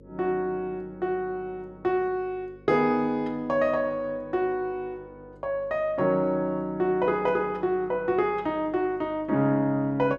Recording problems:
hum; 50 Hz, harmonics up to 550 Hz, SNR 24 dB

